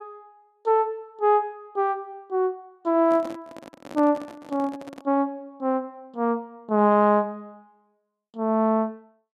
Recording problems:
handling noise; from 3 to 5 s; peak -9 dB vs average level

